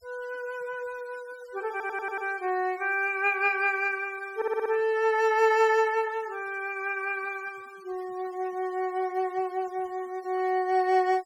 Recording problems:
denoising artefacts; signal-to-artefact ratio 25 dB
audio stuttering; at 1.5 s and at 4.5 s

